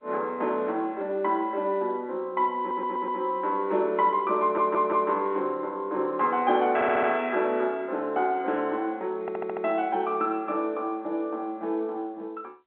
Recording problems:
phone line; 260 Hz to 3.8 kHz, G.711
audio stuttering; 4 times, first at 2.5 s

